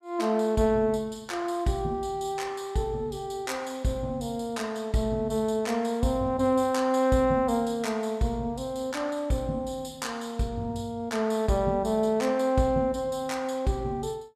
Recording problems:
none

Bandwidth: 14.5 kHz